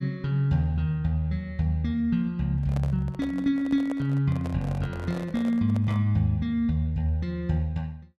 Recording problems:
microphone handling noise; from 2.5 to 6 s; peak -7 dB vs average level

